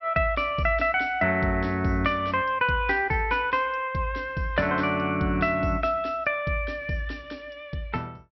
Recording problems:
low-pass filter; nothing above 5.7 kHz

